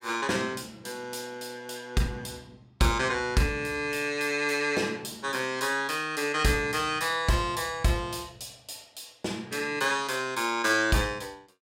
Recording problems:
none

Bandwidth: 16 kHz